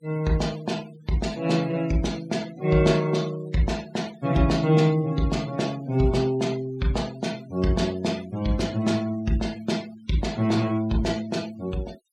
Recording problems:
noise reduction artefacts; signal-to-artefact ratio 20 dB

